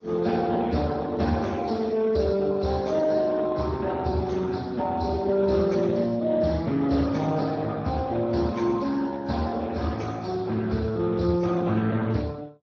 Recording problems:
lossy compression; Vorbis, then Speex, log-spectral distance 4 dB

